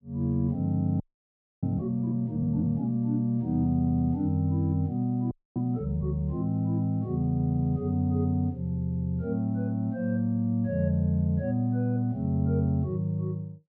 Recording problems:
audio freezing; at 1 s for 0.5 s and at 5.5 s

